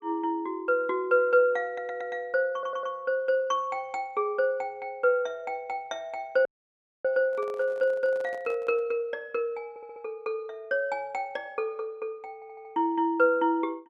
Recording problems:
stutter; 4 times, first at 1.5 s
dropout; at 6.5 s for 0.5 s
microphone handling noise; from 7.5 to 9 s; peak -12 dB vs average level

